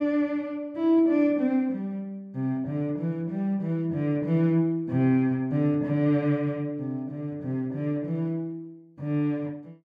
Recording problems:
none

